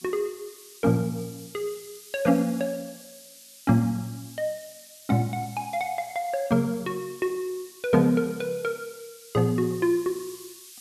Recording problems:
hiss; slope +8 dB per octave, SNR 18 dB

